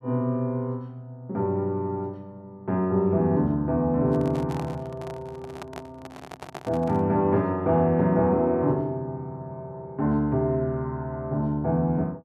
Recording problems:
microphone handling noise; from 4 to 7 s; peak -7 dB vs average level

